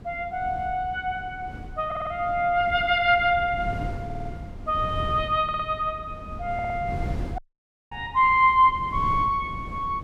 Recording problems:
wind noise; below 190 Hz, SNR 13 dB
audio stuttering; 4 times, first at 2 s
audio cutting out; at 7.5 s for 0.5 s

